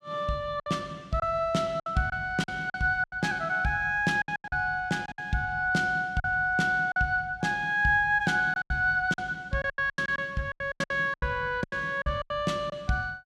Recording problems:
packet loss; 12% of the sound replaced, filled with silence

